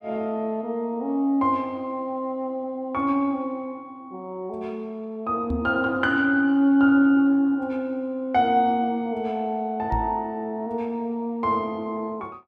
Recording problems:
knock on the microphone; at 5.5 s and at 10 s; peak 0 dB vs average level

